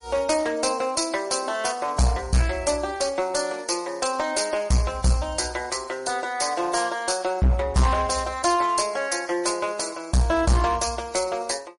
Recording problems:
codec artefacts; MP3, then MP3, log-spectral distance 5 dB, nothing above 10.4 kHz
distortion; hard clipping, uneven, signal-to-distortion ratio 5 dB

